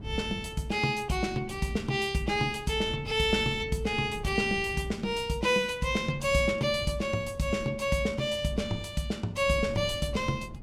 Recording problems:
wind noise; below 180 Hz, SNR 16 dB

